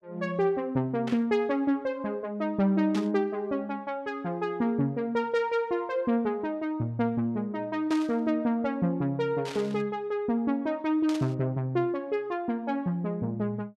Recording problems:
burst of static; 5 times, first at 1 s; peak -7 dB vs average level

